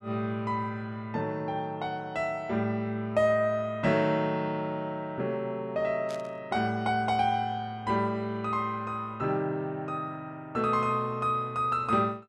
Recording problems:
static burst; at 6 s; peak -11 dB vs average level

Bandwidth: 12.5 kHz